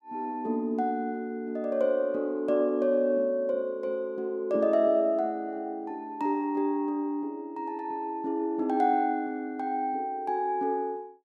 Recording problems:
none

